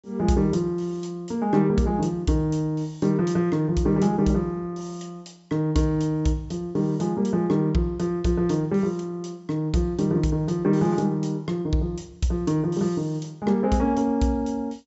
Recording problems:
treble missing; nothing above 8 kHz

